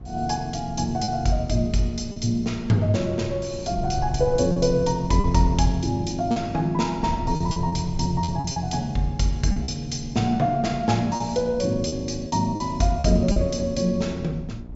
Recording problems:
treble missing; nothing above 8 kHz
hum; 60 Hz, harmonics up to 720 Hz, SNR 19 dB
wind noise; below 98 Hz, SNR 14 dB
lost packets; 5% of the sound replaced, filled with repeated pitch periods

